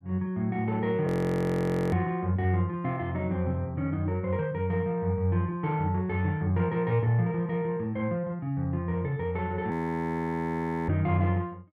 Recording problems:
audio freezing; at 1 s for 1 s and at 9.5 s for 1 s

